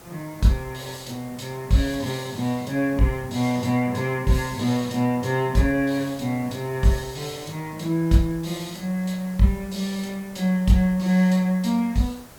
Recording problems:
hiss; slope -4 dB per octave, SNR 21 dB

